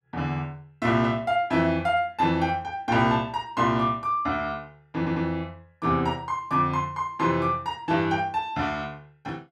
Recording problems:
audio stuttering; at 5 s

